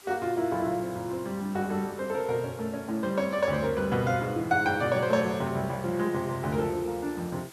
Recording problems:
background hiss; slope 0 dB per octave, SNR 21 dB

